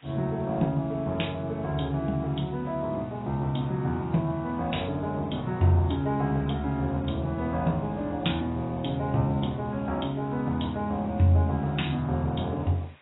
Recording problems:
lossy compression; AAC, log-spectral distance 4 dB, nothing above 3.8 kHz
background hiss; SNR 28 dB

